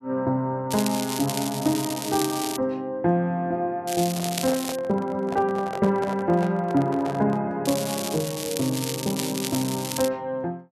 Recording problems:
crackle; from 0.5 to 2.5 s, at 4 s and from 7.5 to 10 s; loose cable, SNR 6 dB
microphone handling noise; from 4 to 7.5 s; peak -5 dB vs average level

